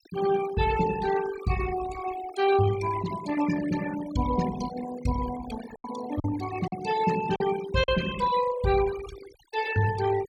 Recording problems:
noise reduction artefacts; signal-to-artefact ratio 11 dB
packet loss; 2% of the sound replaced, filled with silence

